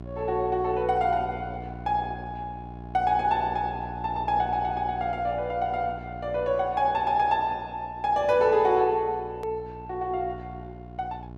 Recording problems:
mains hum; 60 Hz, harmonics up to 1.1 kHz, SNR 15 dB
hard cut with a click; at 9.5 s

